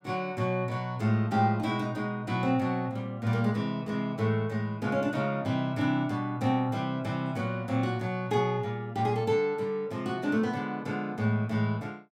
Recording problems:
none

